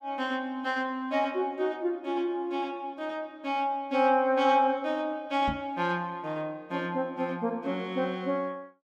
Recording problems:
microphone bump; at 5.5 s; peak -1 dB vs average level

